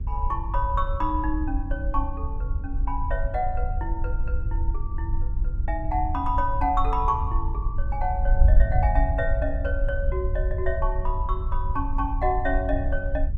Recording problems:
wind on the microphone; below 64 Hz, SNR -1 dB

